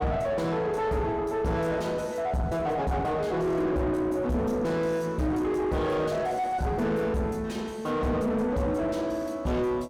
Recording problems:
distorted audio; soft clipping, signal-to-distortion ratio 7 dB

